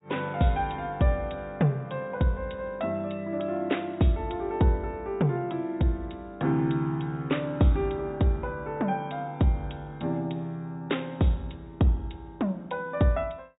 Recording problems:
treble missing; nothing above 4 kHz

